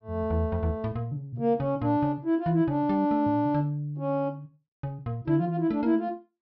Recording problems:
treble cut off; nothing above 5.6 kHz

